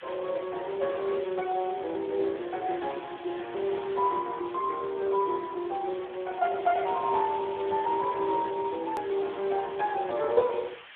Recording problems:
phone line; 300 Hz to 2.5 kHz, Speex
hiss; SNR 18 dB
edit click; at 9 s

